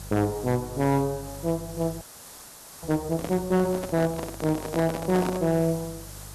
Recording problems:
distorted audio; hard clipping, signal-to-distortion ratio 11 dB
hum; 50 Hz, harmonics up to 500 Hz, SNR 18 dB
background hiss; SNR 16 dB
frozen audio; at 2 s for 1 s
handling noise; from 3 to 5.5 s; peak -2 dB vs average level

